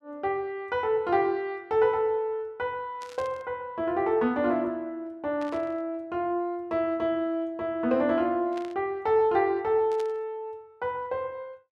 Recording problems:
burst of static; 4 times, first at 3 s; peak -13 dB vs average level

